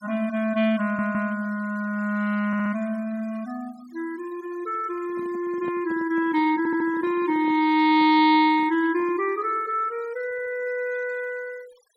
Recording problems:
denoising artefacts; signal-to-artefact ratio 24 dB
stutter; 4 times, first at 1 s
microphone handling noise; from 5 to 9.5 s; peak -10 dB vs average level

